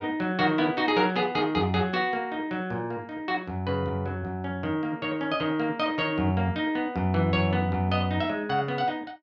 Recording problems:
none

